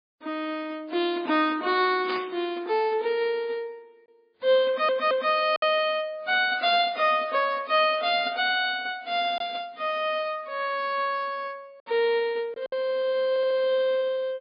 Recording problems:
lossy compression; MP3, then AAC, log-spectral distance 2 dB, nothing above 4.5 kHz
packet loss; 1.2% of the sound replaced, filled with silence
burst of static; at 2 s; peak -5 dB vs average level
audio stuttering; at 4.5 s and at 13 s

